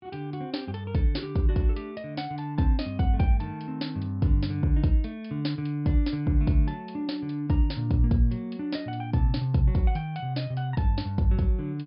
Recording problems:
treble cut off; nothing above 5.5 kHz

